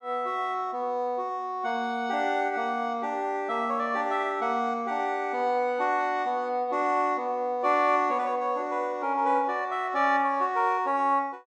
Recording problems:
none

